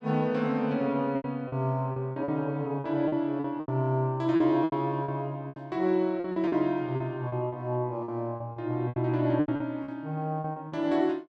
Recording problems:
lost packets; 12% of the sound replaced, filled with repeated pitch periods

